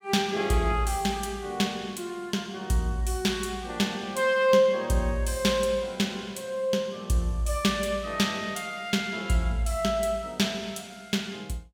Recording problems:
none

